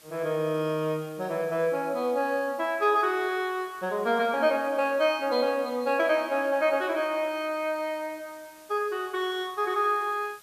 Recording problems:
background hiss; slope -1 dB per octave, SNR 25 dB

